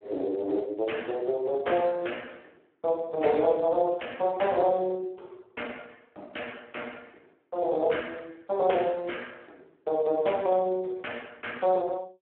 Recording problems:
telephone audio; 280 Hz to 3.2 kHz, Speex

